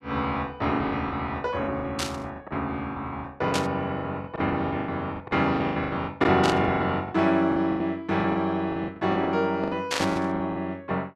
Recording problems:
lost packets; 17% of the sound replaced, filled with the last packet
static burst; 4 times, first at 2 s; peak +3 dB vs average level

